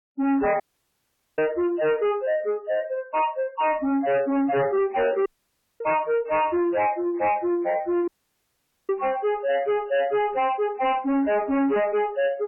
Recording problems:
lossy codec; MP3, log-spectral distance 2 dB, nothing above 2.9 kHz
distortion; soft clipping, signal-to-distortion ratio 7 dB
dropout; at 0.5 s for 1 s, at 5.5 s for 0.5 s and at 8 s for 1 s

